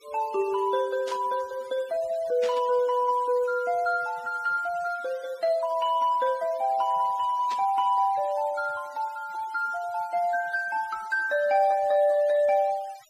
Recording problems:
denoising artefacts; signal-to-artefact ratio 23 dB
static burst; at 1 s, at 2.5 s and at 7.5 s; peak -9 dB vs average level

